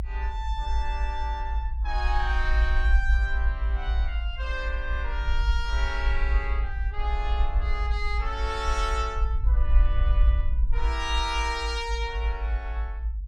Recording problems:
rumble; below 56 Hz, SNR -4 dB

